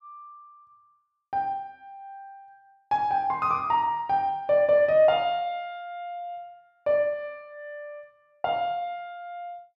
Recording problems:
none

